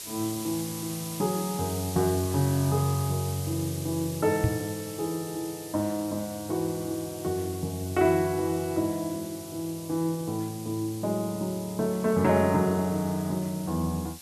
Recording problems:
background hiss; SNR 12 dB
knock on the microphone; at 4.5 s; peak +7 dB vs average level

